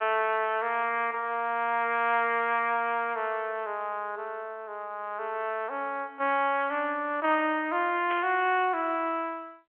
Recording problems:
telephone audio; 280 Hz to 3.4 kHz, G.711
burst of static; at 8 s; peak -6 dB vs average level

